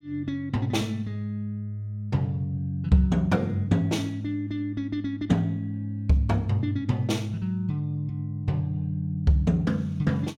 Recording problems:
none

